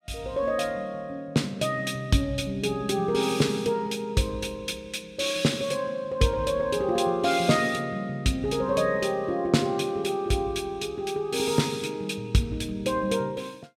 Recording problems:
none

